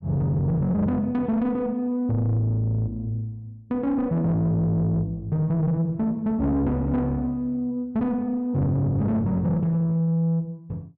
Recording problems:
distorted audio; soft clipping, signal-to-distortion ratio 10 dB

